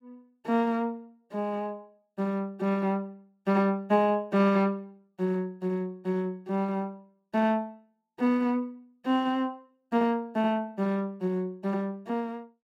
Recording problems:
none

